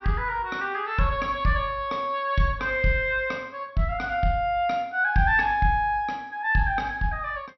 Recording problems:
low-pass filter; nothing above 5.7 kHz

